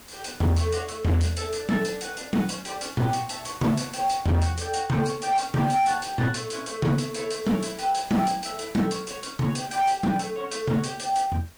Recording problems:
lossy compression; MP3, log-spectral distance 5 dB
distorted audio; hard clipping, signal-to-distortion ratio 8 dB
hiss; slope -2 dB per octave, SNR 21 dB

